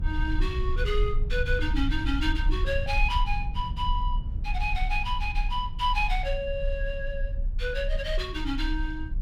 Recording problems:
low-frequency rumble; below 54 Hz, strongest tone 32 Hz, SNR 1 dB

